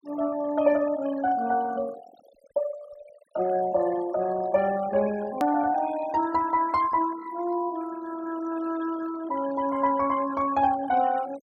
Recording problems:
denoising artefacts; signal-to-artefact ratio 16 dB
hard cut with a click; at 5.5 s

